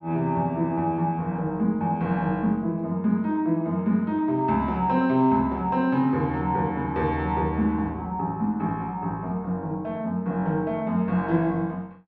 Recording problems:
none

